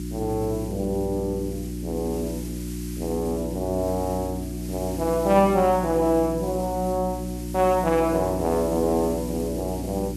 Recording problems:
hum; 60 Hz, harmonics up to 360 Hz, SNR 7 dB
hiss; slope +3 dB per octave, SNR 17 dB

